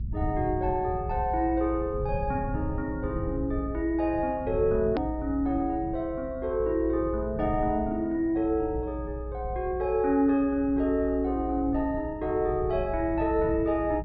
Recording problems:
treble missing; nothing above 5.3 kHz
rumble; below 120 Hz, SNR 9 dB
edit click; at 5 s

